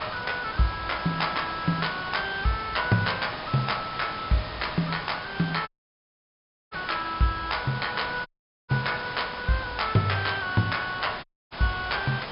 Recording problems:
treble missing; nothing above 5.2 kHz
hiss; SNR 9 dB
audio cutting out; at 5.5 s for 1 s, at 8.5 s and at 11 s

